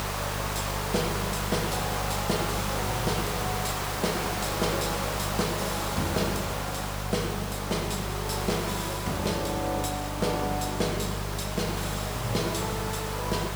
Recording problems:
mains hum; 50 Hz, harmonics up to 450 Hz, SNR 5 dB
background hiss; SNR 1 dB

